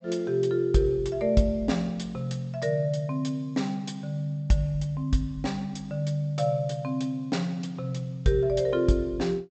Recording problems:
low-pass filter; nothing above 8 kHz

